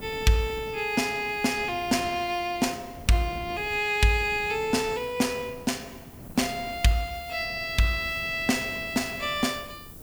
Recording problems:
background hiss; slope +4 dB per octave, SNR 22 dB
wind noise; below 370 Hz, SNR 19 dB

